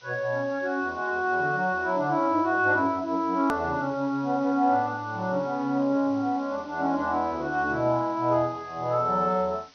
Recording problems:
low-pass filter; nothing above 6.2 kHz
background hiss; slope +1 dB per octave, SNR 27 dB
click at an edit; at 3.5 s

